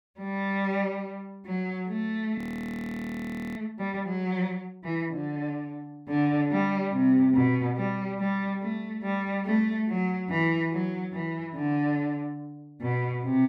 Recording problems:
audio freezing; at 2.5 s for 1 s

